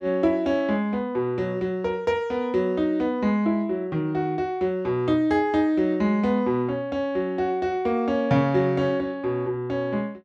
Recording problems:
none

